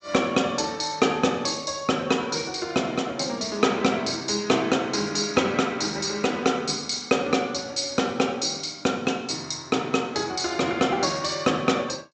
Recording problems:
low-pass filter; nothing above 8 kHz

